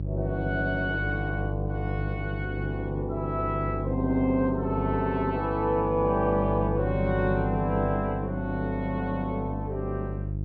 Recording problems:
electrical hum; 50 Hz, harmonics up to 500 Hz, SNR 4 dB

